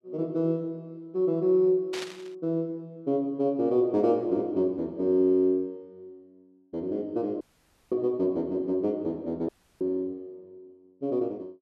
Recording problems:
burst of static; at 2 s; peak -5 dB vs average level
dropout; at 7.5 s for 0.5 s and at 9.5 s

